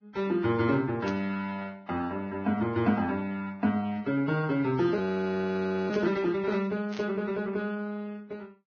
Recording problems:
lossy compression; Vorbis, log-spectral distance 2 dB, nothing above 6.3 kHz
burst of static; at 1 s, at 6 s and at 7 s; peak -9 dB vs average level
frozen audio; at 5 s for 1 s

